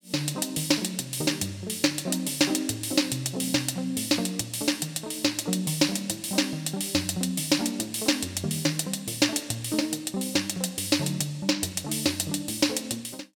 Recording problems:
none

